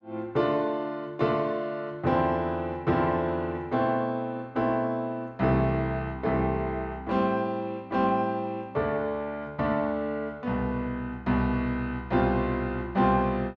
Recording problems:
none

